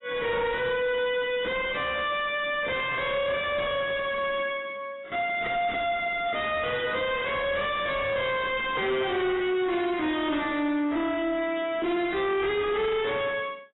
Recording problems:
lossy compression; AAC, log-spectral distance 4 dB, nothing above 3.7 kHz
distorted audio; soft clipping, signal-to-distortion ratio 5 dB

